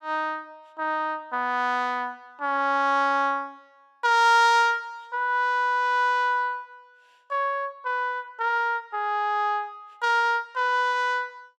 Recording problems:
none

